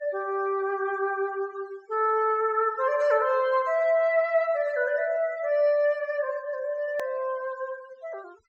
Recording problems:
treble missing; nothing above 8 kHz
noise reduction artefacts; signal-to-artefact ratio 26 dB
edit click; at 7 s

